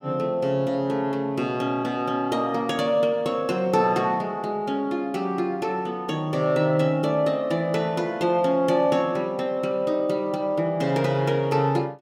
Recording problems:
none

